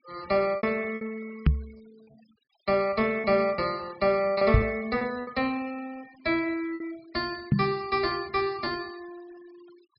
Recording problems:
low-pass filter; nothing above 5.5 kHz
denoising artefacts; signal-to-artefact ratio 23 dB
packet loss; 6% of the sound replaced, filled with repeated pitch periods
knock on the microphone; at 1.5 s, at 4.5 s and at 7.5 s; peak +10 dB vs average level

